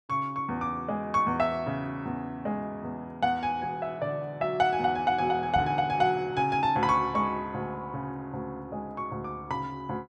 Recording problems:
microphone thump; at 5.5 s; peak -2 dB vs average level

